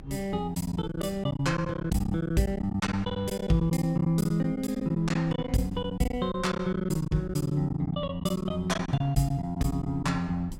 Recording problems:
rumble; below 120 Hz, SNR 19 dB
packet loss; 13% of the sound replaced, filled with silence

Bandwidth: 16 kHz